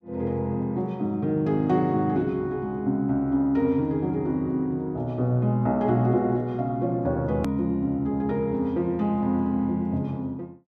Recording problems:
click at an edit; at 7.5 s

